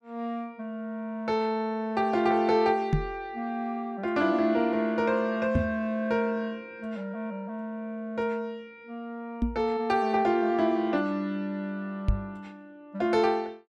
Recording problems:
microphone thump; 4 times, first at 3 s; peak +7 dB vs average level

